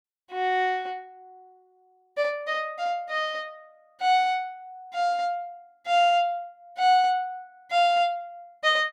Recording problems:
none

